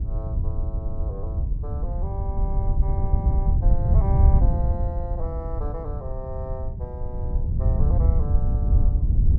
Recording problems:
wind on the microphone; below 86 Hz, SNR -12 dB

